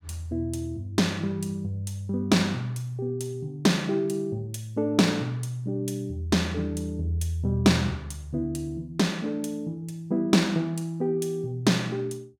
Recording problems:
none

